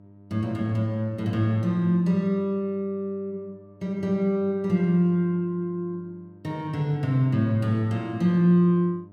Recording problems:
electrical hum; 50 Hz, harmonics up to 1 kHz, SNR 25 dB

